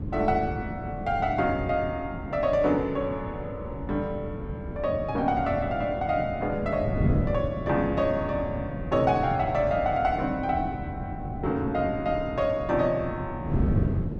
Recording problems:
wind noise; below 240 Hz, SNR 6 dB

